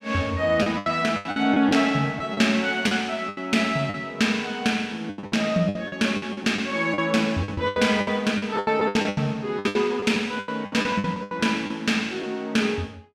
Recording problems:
lost packets; 15% of the sound replaced, filled with the last packet

